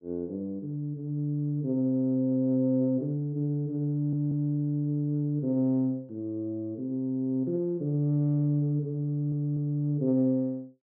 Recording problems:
audio stuttering; at 4 s and at 9 s

